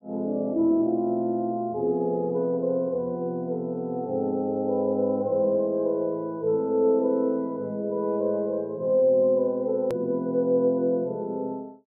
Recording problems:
hard cut with a click; at 10 s

